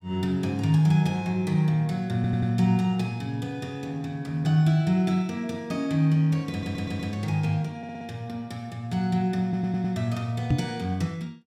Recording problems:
stutter; 4 times, first at 2 s
knock on the microphone; at 11 s; peak +6 dB vs average level

